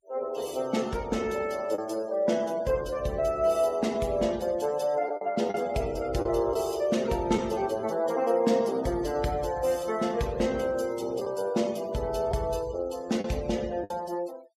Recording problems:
noise reduction artefacts; signal-to-artefact ratio 21 dB
packet loss; 2% of the sound replaced, filled with the last packet

